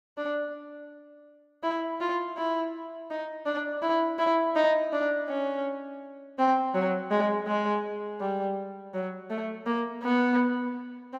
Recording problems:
none

